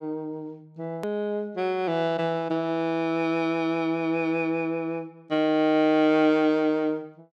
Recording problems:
hard cut with a click; at 1 s

